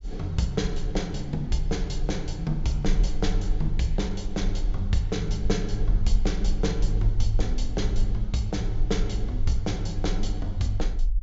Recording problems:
treble missing; nothing above 8 kHz
rumble; below 42 Hz, strongest tone 24 Hz, SNR 2 dB

